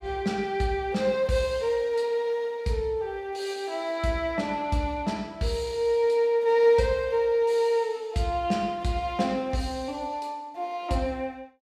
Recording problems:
none

